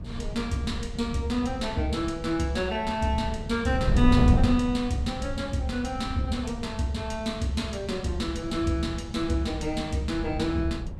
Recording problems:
wind noise; below 150 Hz, SNR 5 dB

